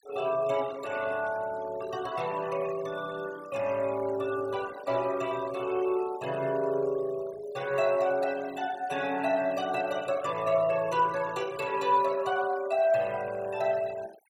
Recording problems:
denoising artefacts; signal-to-artefact ratio 19 dB

